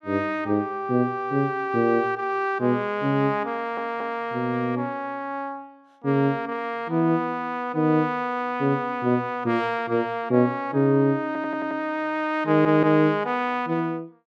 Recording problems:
audio stuttering; at 3.5 s, at 11 s and at 12 s

